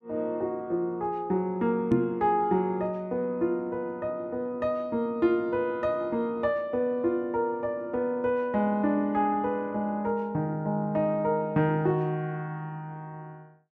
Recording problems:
microphone bump; at 2 s; peak +5 dB vs average level

